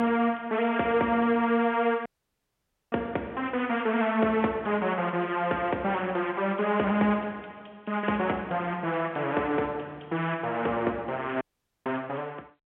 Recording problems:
telephone audio; 260 Hz to 3.3 kHz, G.711
audio cutting out; at 2 s for 1 s and at 11 s

